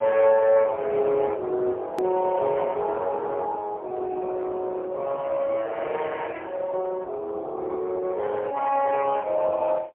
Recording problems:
telephone audio; 320 Hz to 3.3 kHz, AMR-NB, then MP3
edit click; at 2 s

